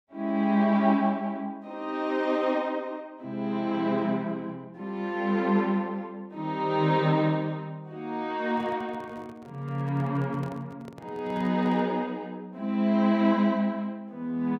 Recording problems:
microphone handling noise; from 8.5 to 12 s; peak -12 dB vs average level

